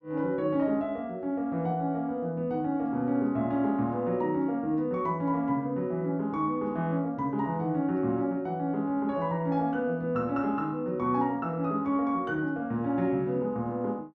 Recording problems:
none

